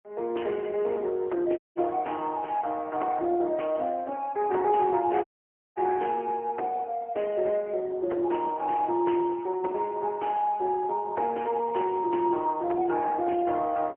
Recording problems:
phone line; 280 Hz to 3.1 kHz, AMR-NB, then MP3
audio cutting out; at 1.5 s and at 5 s for 0.5 s

